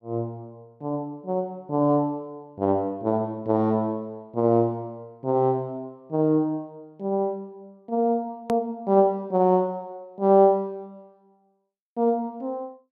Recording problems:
edit click; at 8.5 s

